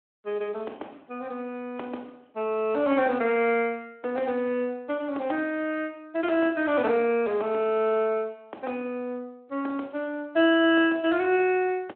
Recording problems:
phone line; 240 Hz to 3.2 kHz, Speex

